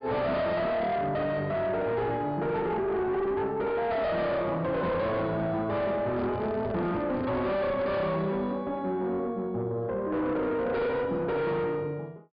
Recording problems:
treble missing; nothing above 5 kHz
distorted audio; soft clipping, signal-to-distortion ratio 7 dB
microphone handling noise; from 6 to 8 s; peak -2 dB vs average level

